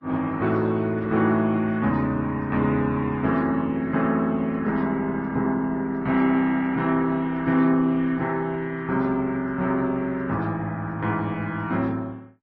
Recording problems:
codec artefacts; Opus, then MP3, log-spectral distance 2 dB

